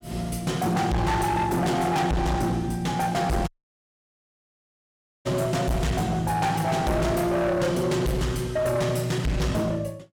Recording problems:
distortion; hard clipping, uneven, signal-to-distortion ratio 6 dB
dropout; at 3.5 s for 2 s

